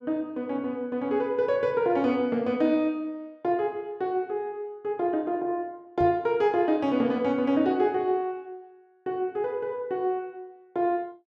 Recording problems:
knock on the microphone; at 6 s; peak -5 dB vs average level

